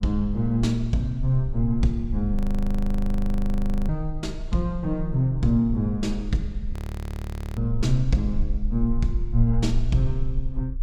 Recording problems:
low-frequency rumble; below 40 Hz, strongest tone 26 Hz, SNR 7 dB
audio freezing; at 2.5 s for 1.5 s and at 6.5 s for 1 s

